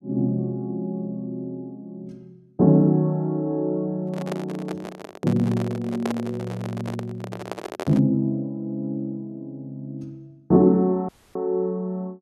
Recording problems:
microphone handling noise; from 4 to 8 s; peak -1 dB vs average level
audio cutting out; at 11 s

